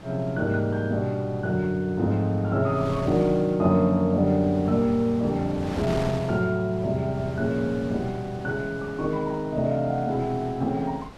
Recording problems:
wind on the microphone; below 910 Hz, SNR 14 dB

